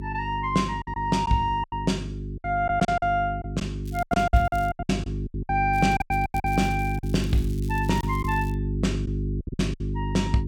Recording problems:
hum; 50 Hz, harmonics up to 400 Hz, SNR 4 dB
packet loss; 12% of the sound replaced, filled with silence
crackling; at 4 s and from 5.5 to 8.5 s; loose cable, SNR 22 dB

